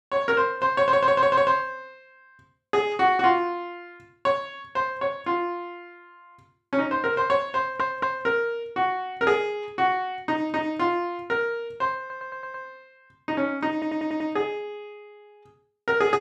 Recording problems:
stutter; 4 times, first at 1 s

